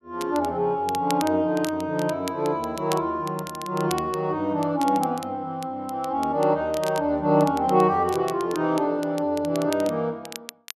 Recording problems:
crackle; vinyl, SNR 17 dB

